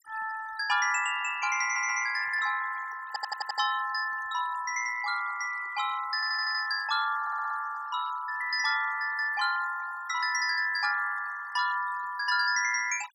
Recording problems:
noise reduction artefacts; signal-to-artefact ratio 15 dB
audio stuttering; 4 times, first at 1.5 s

